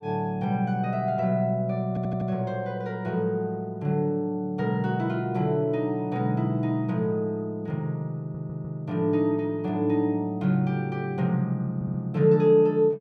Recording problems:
audio stuttering; at 2 s, at 8 s and at 12 s

